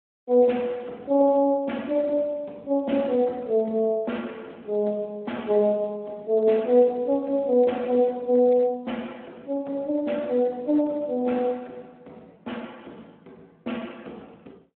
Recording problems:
telephone audio; 220 Hz to 3.2 kHz, Speex

